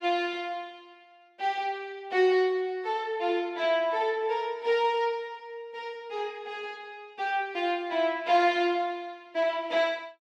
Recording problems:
none

